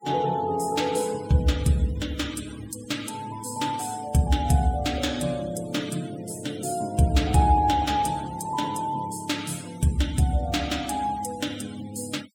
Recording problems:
denoising artefacts; signal-to-artefact ratio 18 dB

